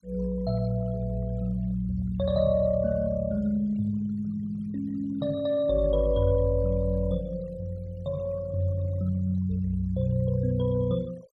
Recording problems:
denoising artefacts; signal-to-artefact ratio 26 dB

